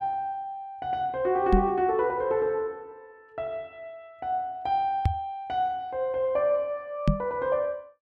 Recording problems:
knock on the microphone; at 1.5 s, at 5 s and at 7 s; peak +8 dB vs average level

